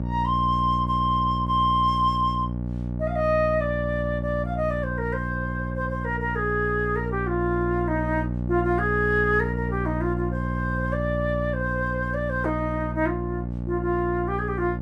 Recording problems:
electrical hum; 60 Hz, harmonics up to 840 Hz, SNR 4 dB

